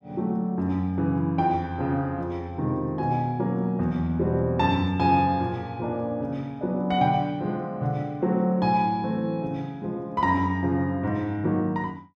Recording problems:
none

